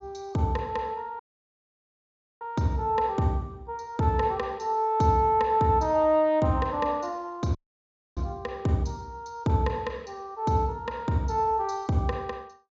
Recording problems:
treble cut off; nothing above 8 kHz
dropout; at 1 s for 1 s and at 7.5 s for 0.5 s

